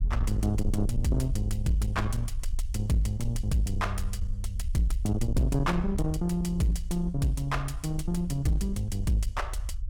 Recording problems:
distorted audio; soft clipping, signal-to-distortion ratio 11 dB
rumble; below 62 Hz, SNR 5 dB

